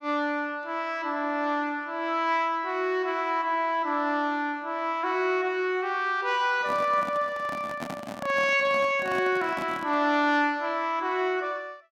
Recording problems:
handling noise; from 6.5 to 10 s; peak -4 dB vs average level

